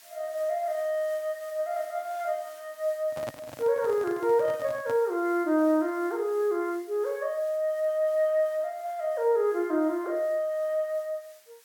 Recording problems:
background hiss; SNR 25 dB
handling noise; from 3 to 5 s; peak -5 dB vs average level

